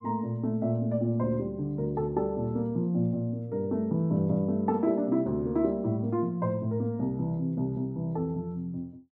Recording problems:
none

